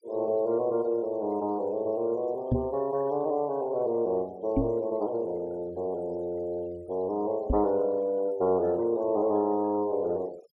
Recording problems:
denoising artefacts; signal-to-artefact ratio 28 dB
microphone bump; at 2.5 s, at 4.5 s and at 7.5 s; peak +6 dB vs average level

